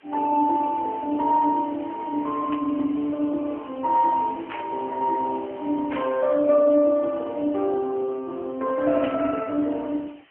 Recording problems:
telephone audio; 240 Hz to 3.2 kHz, AMR-NB
hiss; SNR 27 dB
static burst; 4 times, first at 2.5 s; peak -6 dB vs average level

